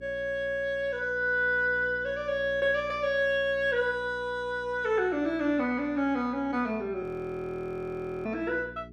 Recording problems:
electrical hum; 60 Hz, harmonics up to 420 Hz, SNR 21 dB
audio freezing; at 7 s for 1 s

